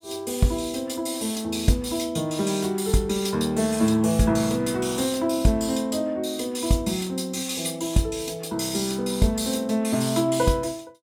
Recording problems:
none

